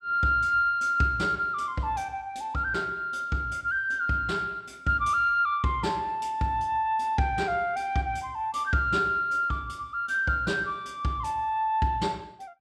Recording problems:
none

